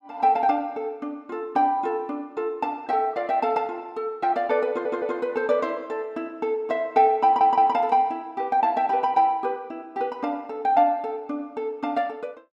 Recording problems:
audio stuttering; at 4.5 s and at 7 s

